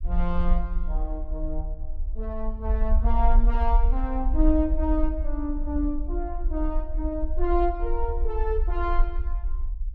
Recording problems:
low-frequency rumble; below 48 Hz, SNR -1 dB

